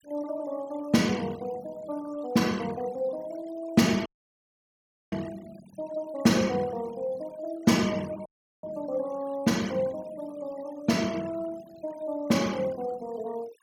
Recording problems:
denoising artefacts; signal-to-artefact ratio 19 dB
dropout; at 4 s for 1 s and at 8.5 s

